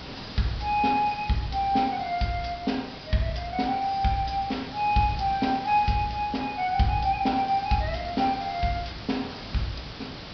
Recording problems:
treble missing; nothing above 5.5 kHz
hiss; slope -2 dB per octave, SNR 13 dB

